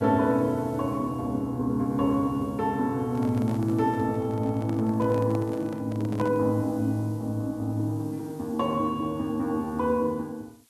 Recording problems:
background hiss; slope +1 dB per octave, SNR 29 dB
handling noise; from 3 to 6.5 s; peak -6 dB vs average level

